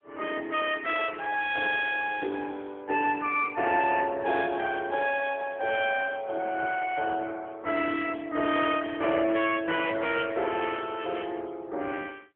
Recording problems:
telephone audio; 280 Hz to 3.3 kHz, AMR-NB

